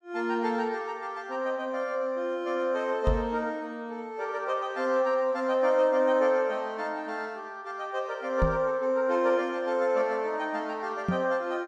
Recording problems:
microphone thump; at 3 s, at 8.5 s and at 11 s; peak +4 dB vs average level

